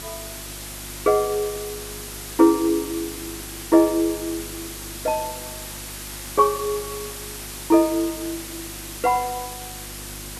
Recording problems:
hum; 50 Hz, harmonics up to 350 Hz, SNR 20 dB
background hiss; slope 0 dB per octave, SNR 11 dB

